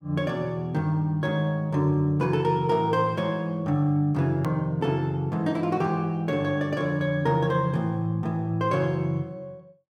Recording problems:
edit click; at 4.5 s

